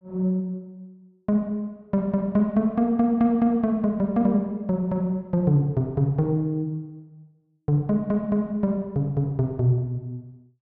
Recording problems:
none

